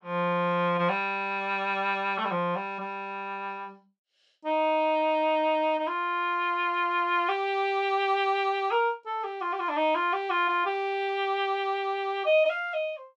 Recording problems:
none

